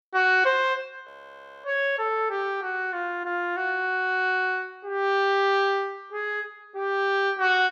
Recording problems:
frozen audio; at 1 s for 0.5 s

